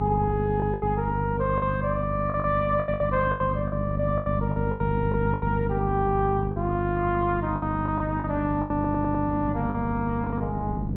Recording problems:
lossy codec; MP2, log-spectral distance 2 dB, nothing above 3.7 kHz
hum; 50 Hz, harmonics up to 700 Hz, SNR 2 dB
wind noise; below 260 Hz, SNR 12 dB
lost packets; 11% of the sound replaced, filled with the last packet
stutter; at 8.5 s

